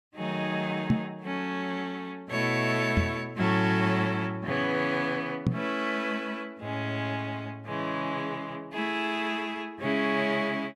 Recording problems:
microphone thump; at 1 s, at 3 s and at 5.5 s; peak +8 dB vs average level

